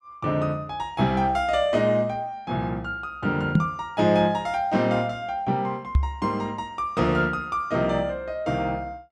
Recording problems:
microphone bump; at 3.5 s and at 6 s; peak +8 dB vs average level

